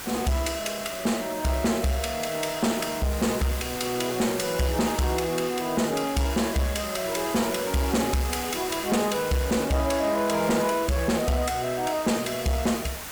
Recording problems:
distorted audio; soft clipping, signal-to-distortion ratio 11 dB
hiss; slope -2 dB per octave, SNR 10 dB

